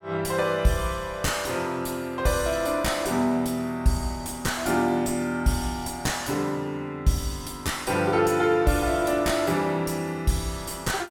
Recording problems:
distorted audio; soft clipping, signal-to-distortion ratio 9 dB

